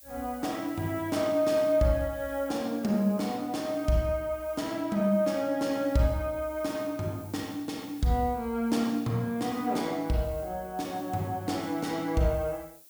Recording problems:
hiss; SNR 21 dB

